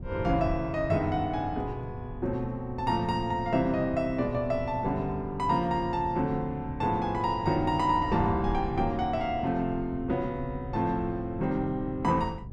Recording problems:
wind on the microphone; below 140 Hz, SNR 12 dB

